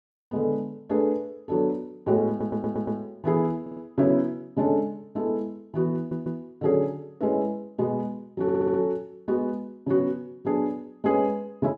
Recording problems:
audio stuttering; 4 times, first at 2.5 s

